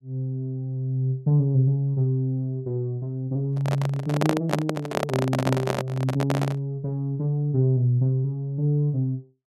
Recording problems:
microphone handling noise; from 3.5 to 6.5 s; peak +4 dB vs average level

